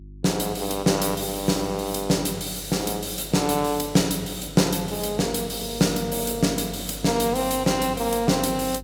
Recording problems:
electrical hum; 50 Hz, harmonics up to 350 Hz, SNR 18 dB

